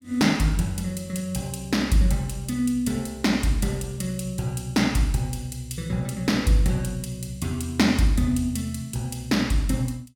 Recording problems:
none

